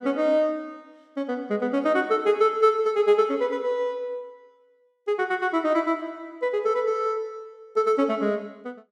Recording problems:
none

